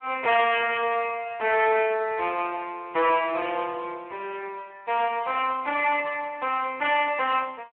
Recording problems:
telephone audio; 340 Hz to 3.5 kHz, Speex
distorted audio; soft clipping, signal-to-distortion ratio 9 dB

